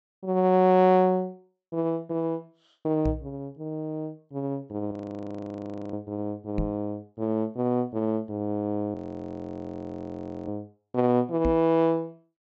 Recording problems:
treble cut off; nothing above 8 kHz
knock on the microphone; at 3 s, at 6.5 s and at 11 s; peak +2 dB vs average level
audio freezing; at 5 s for 1 s and at 9 s for 1.5 s

